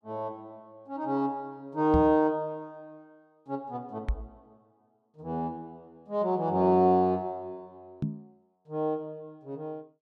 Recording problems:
microphone thump; at 2 s, at 4 s and at 8 s; peak +3 dB vs average level

